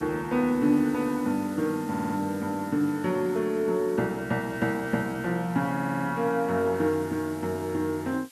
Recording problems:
hiss; SNR 22 dB
audio stuttering; at 2 s and at 5.5 s

